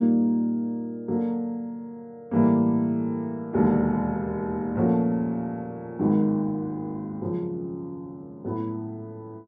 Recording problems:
none

